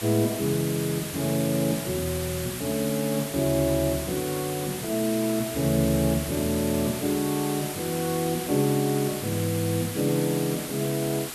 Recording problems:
background hiss; slope -1 dB per octave, SNR 7 dB

